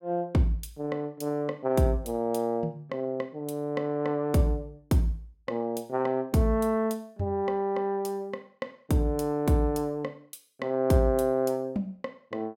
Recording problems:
none

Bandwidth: 16.5 kHz